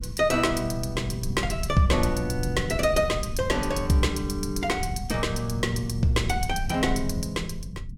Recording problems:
rumble; below 130 Hz, SNR 8 dB

